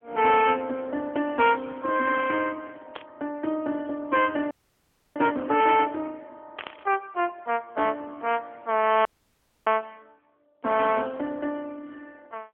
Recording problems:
phone line; 240 Hz to 3.3 kHz, AMR-NB
burst of static; at 3 s and at 6.5 s; peak -8 dB vs average level
frozen audio; at 4.5 s for 0.5 s and at 9 s for 0.5 s

